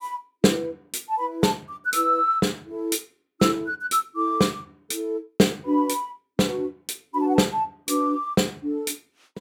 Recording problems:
none

